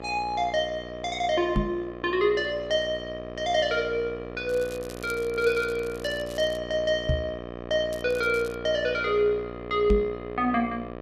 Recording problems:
hum; 60 Hz, harmonics up to 2.5 kHz, SNR 11 dB
knock on the microphone; at 1.5 s, at 7 s and at 10 s; peak +5 dB vs average level
crackle; from 4.5 to 6.5 s and at 8 s; loose cable, SNR 20 dB

